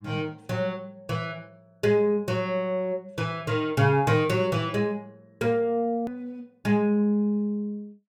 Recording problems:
edit click; at 6 s

